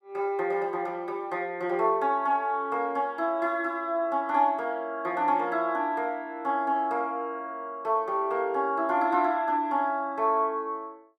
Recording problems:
none

